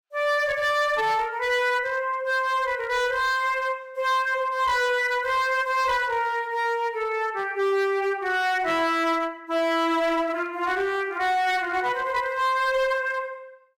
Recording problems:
distortion; hard clipping, uneven, signal-to-distortion ratio 10 dB

